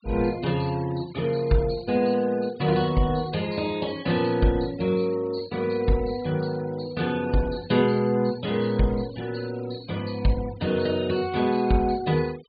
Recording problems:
low-pass filter; nothing above 4.7 kHz
noise reduction artefacts; signal-to-artefact ratio 20 dB

